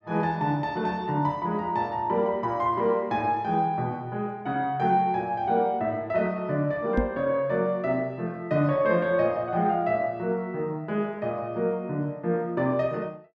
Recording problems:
knock on the microphone; at 7 s; peak +5 dB vs average level

